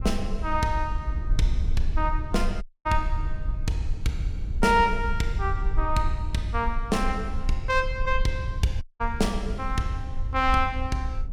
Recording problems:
rumble; below 56 Hz, SNR 4 dB
dropout; at 2.5 s and at 9 s

